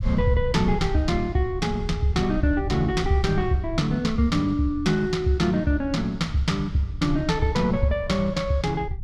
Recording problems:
low-frequency rumble; below 92 Hz, SNR 10 dB

